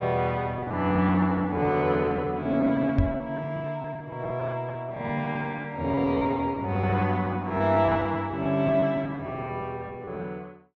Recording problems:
treble cut off; nothing above 7.1 kHz
lost packets; 14% of the sound replaced, filled with repeated pitch periods
knock on the microphone; at 3 s; peak +6 dB vs average level

